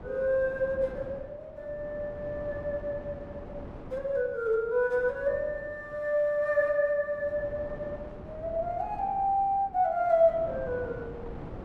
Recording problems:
wind noise; below 530 Hz, SNR 16 dB

